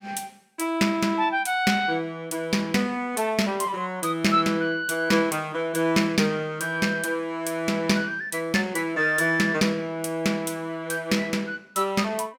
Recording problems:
none

